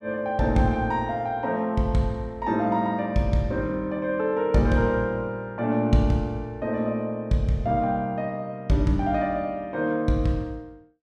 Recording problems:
none

